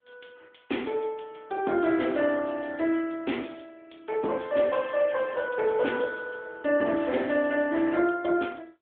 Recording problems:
phone line; 220 Hz to 3.5 kHz, AMR-NB

